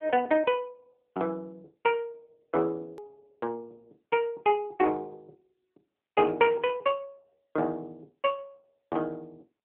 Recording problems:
phone line; 220 Hz to 3.3 kHz, AMR-NB
hard cut with a click; at 3 s

